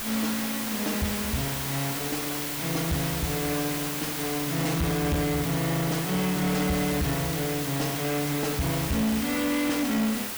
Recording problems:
distortion; soft clipping, signal-to-distortion ratio 3 dB
background hiss; slope -4 dB per octave, SNR 3 dB

